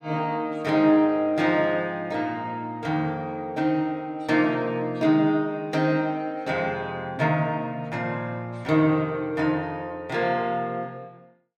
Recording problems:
none

